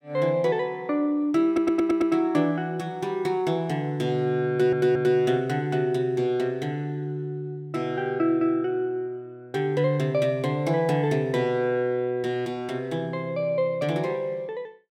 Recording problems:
audio stuttering; at 1.5 s and at 4.5 s

